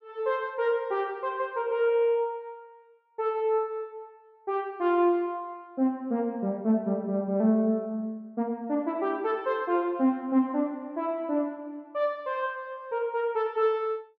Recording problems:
none

